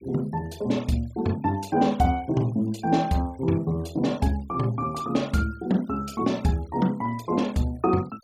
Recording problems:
denoising artefacts; signal-to-artefact ratio 25 dB

